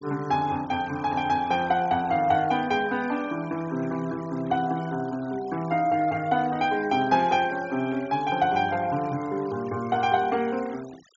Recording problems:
treble missing; nothing above 7.4 kHz
denoising artefacts; signal-to-artefact ratio 21 dB

